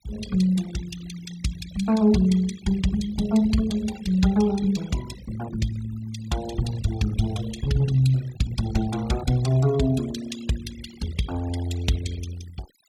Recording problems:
denoising artefacts; signal-to-artefact ratio 14 dB

